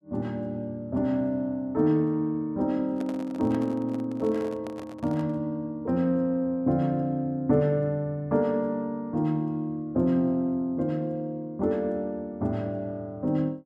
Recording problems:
microphone handling noise; from 3 to 5.5 s; peak -9 dB vs average level

